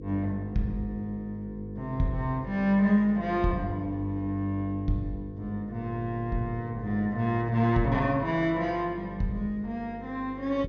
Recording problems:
low-pass filter; nothing above 6.7 kHz
hum; 50 Hz, harmonics up to 500 Hz, SNR 14 dB

